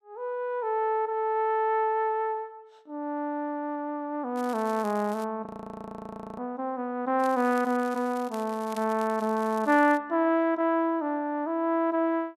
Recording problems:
crackle; at 4.5 s and from 7 to 10 s; loose cable, SNR 22 dB
frozen audio; at 5.5 s for 1 s

